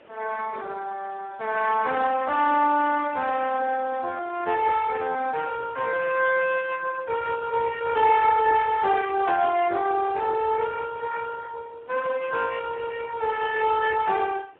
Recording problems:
telephone audio; 280 Hz to 2.3 kHz, Speex
hiss; SNR 28 dB

